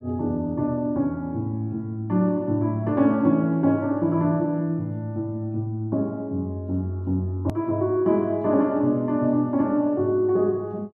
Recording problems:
hard cut with a click; at 7.5 s

